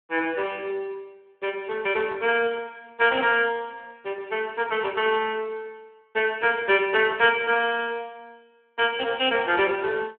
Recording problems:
phone line; 280 Hz to 3.3 kHz, Speex

